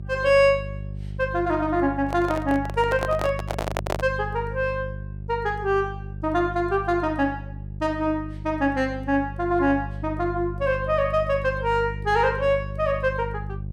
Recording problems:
hum; 50 Hz, harmonics up to 400 Hz, SNR 10 dB
handling noise; from 2 to 4 s; peak 0 dB vs average level

